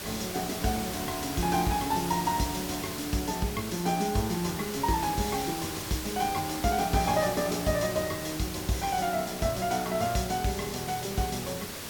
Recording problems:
background hiss; slope -2 dB per octave, SNR 6 dB

